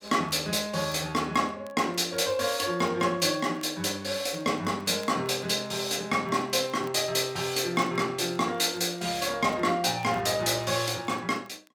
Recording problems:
crackle; vinyl, SNR 29 dB

